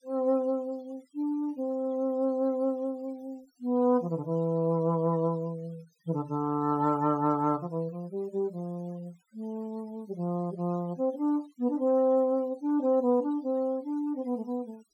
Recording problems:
noise reduction artefacts; signal-to-artefact ratio 28 dB

